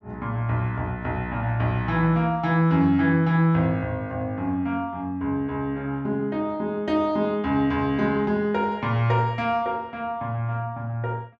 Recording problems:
none

